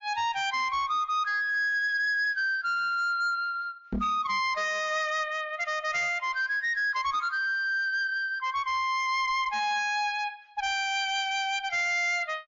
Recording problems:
codec artefacts; MP3, log-spectral distance 2 dB, nothing above 6.3 kHz
distortion; hard clipping, signal-to-distortion ratio 10 dB
microphone thump; at 4 s; peak 0 dB vs average level

